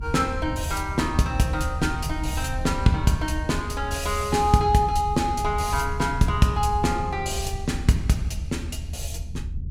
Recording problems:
low-frequency rumble; below 86 Hz, SNR 8 dB

